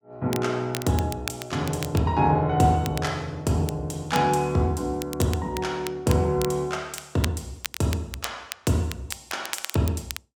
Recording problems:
crackling; vinyl, SNR 12 dB

